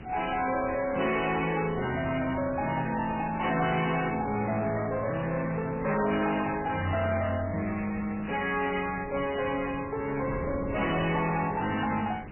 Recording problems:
codec artefacts; MP3, log-spectral distance 16 dB, nothing above 2.9 kHz
distortion; soft clipping, signal-to-distortion ratio 11 dB
background hiss; SNR 23 dB
wind on the microphone; below 370 Hz, SNR 14 dB

